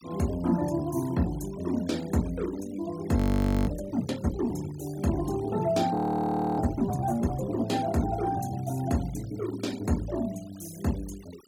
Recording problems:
denoising artefacts; signal-to-artefact ratio 20 dB
audio freezing; at 3 s for 0.5 s and at 6 s for 0.5 s

